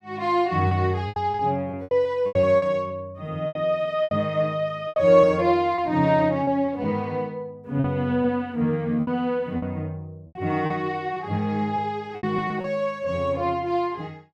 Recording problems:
packet loss; 9% of the sound replaced, filled with repeated pitch periods

